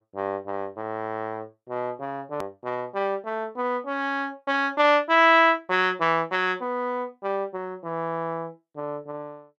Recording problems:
click at an edit; at 2.5 s

